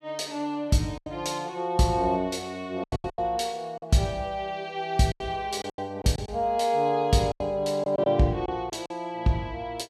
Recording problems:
lost packets; 8% of the sound replaced, filled with silence

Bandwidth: 15 kHz